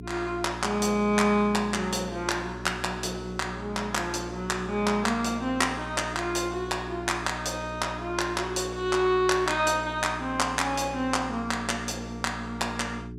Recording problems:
hum; 60 Hz, harmonics up to 420 Hz, SNR 12 dB

